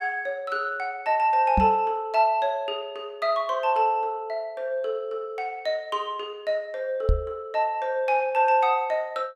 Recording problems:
microphone bump; at 1.5 s and at 7 s; peak +5 dB vs average level

